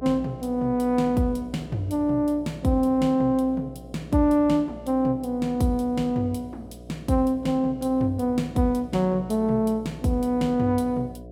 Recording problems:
hum; 60 Hz, harmonics up to 720 Hz, SNR 19 dB

